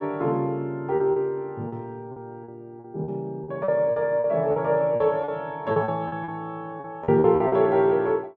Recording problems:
packet loss; 11% of the sound replaced, filled with repeated pitch periods

